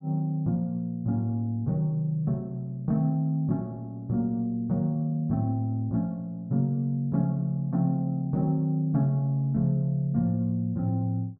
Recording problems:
none

